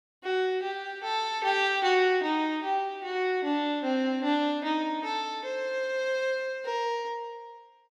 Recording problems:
none

